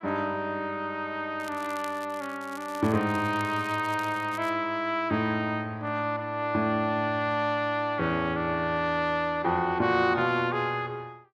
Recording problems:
crackle; from 1.5 to 4.5 s; loose cable, SNR 21 dB

